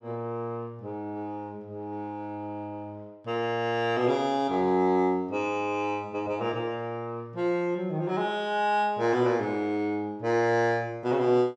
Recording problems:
none

